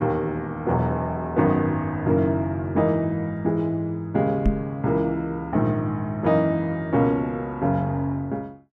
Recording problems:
knock on the microphone; at 4.5 s; peak +5 dB vs average level

